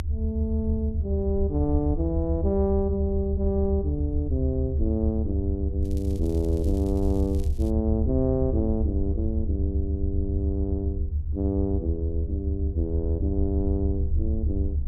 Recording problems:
low-frequency rumble; below 78 Hz, SNR -1 dB
crackle; from 6 to 7.5 s; loose cable, SNR 23 dB

